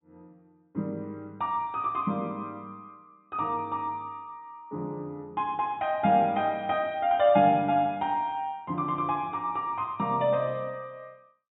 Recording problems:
low-pass filter; nothing above 4 kHz

